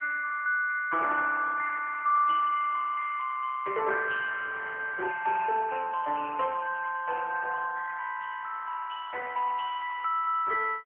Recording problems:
phone line; 340 Hz to 2.9 kHz, AMR-NB

